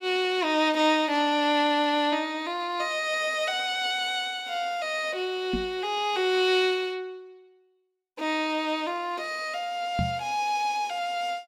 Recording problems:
knock on the microphone; at 5.5 s and at 10 s; peak +1 dB vs average level

